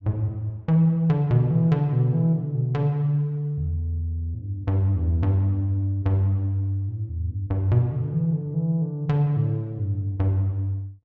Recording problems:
treble cut off; nothing above 8 kHz

